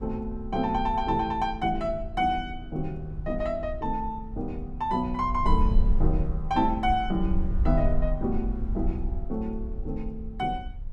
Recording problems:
rumble; below 54 Hz, strongest tone 22 Hz, SNR 4 dB

